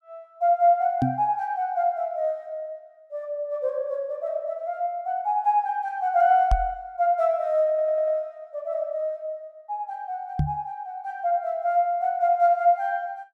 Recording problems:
knock on the microphone; at 1 s, at 6.5 s and at 10 s; peak +4 dB vs average level
stutter; at 7.5 s

